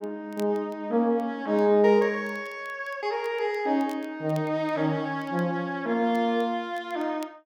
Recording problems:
crackling; vinyl, SNR 29 dB

